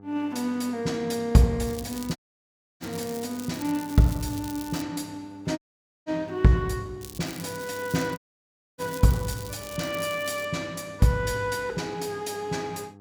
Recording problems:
hum; 50 Hz, harmonics up to 1.3 kHz, SNR 21 dB
crackle; from 1.5 to 5 s and from 7 to 10 s; loose cable, SNR 15 dB
audio cutting out; at 2 s for 0.5 s, at 5.5 s and at 8 s for 0.5 s

